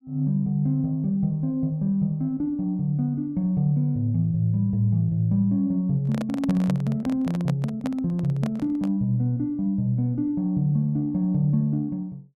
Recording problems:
microphone handling noise; from 6 to 9 s; peak -4 dB vs average level

